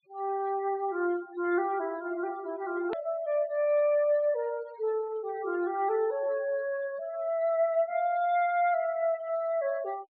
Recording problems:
treble cut off; nothing above 4.4 kHz
noise reduction artefacts; signal-to-artefact ratio 20 dB
click at an edit; at 3 s

